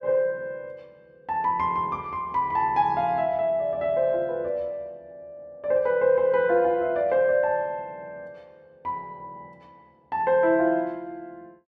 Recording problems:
none

